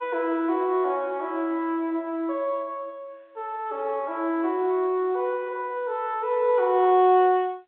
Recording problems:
phone line; 280 Hz to 3.7 kHz, G.711

